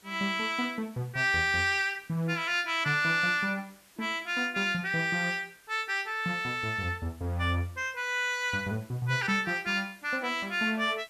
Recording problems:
hiss; slope -1 dB per octave, SNR 27 dB

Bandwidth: 14 kHz